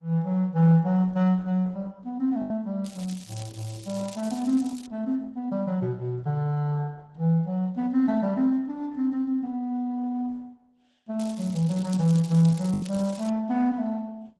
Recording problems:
lossy compression; MP3, then Opus, log-spectral distance 3 dB
packet loss; 1.2% of the sound replaced, filled with the last packet
crackling; from 3 to 5 s and from 11 to 13 s; loose cable, SNR 19 dB

